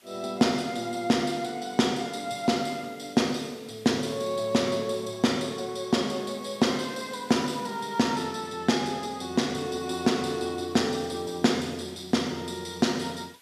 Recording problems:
hiss; slope 0 dB per octave, SNR 27 dB

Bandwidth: 14.5 kHz